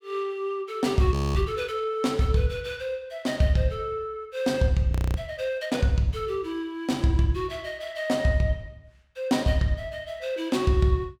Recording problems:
audio freezing; at 1 s and at 5 s

